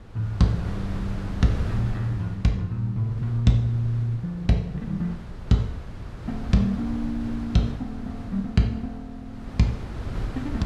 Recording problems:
wind noise; below 170 Hz, SNR 10 dB

